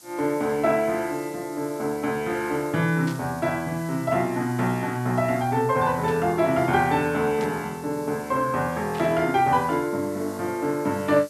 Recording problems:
background hiss; SNR 21 dB
static burst; 4 times, first at 3 s; peak -12 dB vs average level

